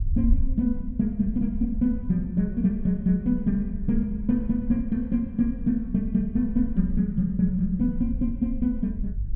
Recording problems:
rumble; below 56 Hz, SNR 9 dB

